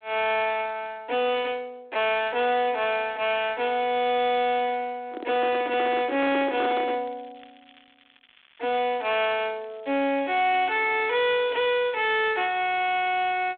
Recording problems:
telephone audio; 260 Hz to 3.6 kHz, G.726
distortion; hard clipping, signal-to-distortion ratio 11 dB
crackling; from 3.5 to 4.5 s and from 7 to 12 s; loose cable, SNR 30 dB
microphone handling noise; from 5 to 7 s; peak -2 dB vs average level

